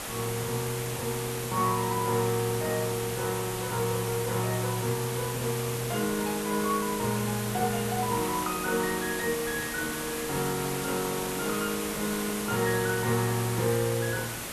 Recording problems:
background hiss; slope -3 dB per octave, SNR 4 dB

